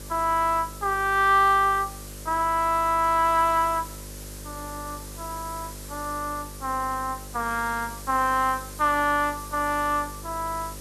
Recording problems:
hum; 50 Hz, harmonics up to 600 Hz, SNR 18 dB
hiss; slope 0 dB per octave, SNR 17 dB

